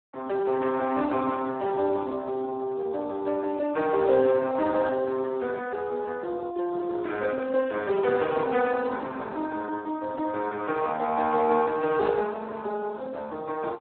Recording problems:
telephone audio; 260 Hz to 2.3 kHz, Speex

